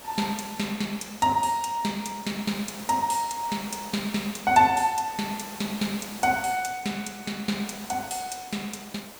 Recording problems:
background hiss; slope -3 dB per octave, SNR 14 dB

